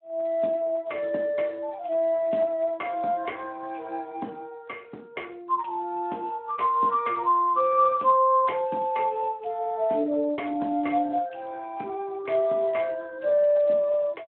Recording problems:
telephone audio; 240 Hz to 3.1 kHz, Speex

